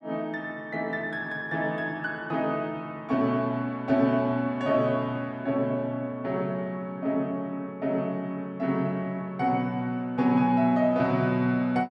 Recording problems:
none

